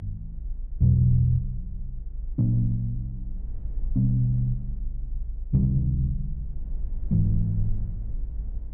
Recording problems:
treble missing; nothing above 3.4 kHz
rumble; below 52 Hz, strongest tone 28 Hz, SNR 10 dB

